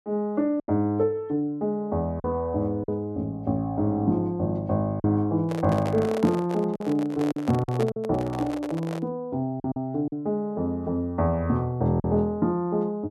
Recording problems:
packet loss; 4% of the sound replaced, filled with silence
handling noise; from 5.5 to 9 s; peak -3 dB vs average level

